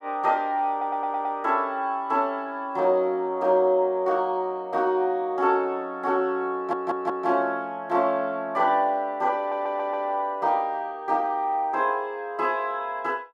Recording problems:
audio stuttering; at 0.5 s, at 6.5 s and at 9.5 s

